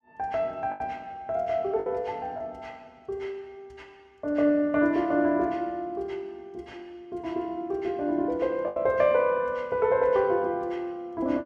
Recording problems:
lost packets; 2% of the sound replaced, filled with the last packet

